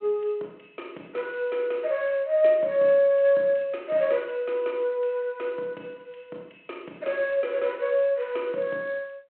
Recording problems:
phone line; 240 Hz to 3.6 kHz, G.726

